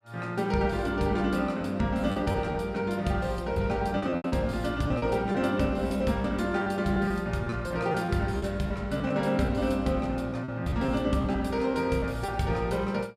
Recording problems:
packet loss; 7% of the sound replaced, filled with repeated pitch periods

